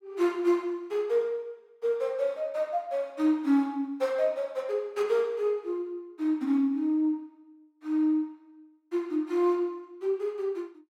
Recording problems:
none

